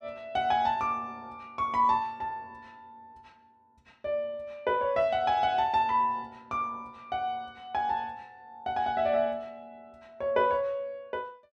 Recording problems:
none

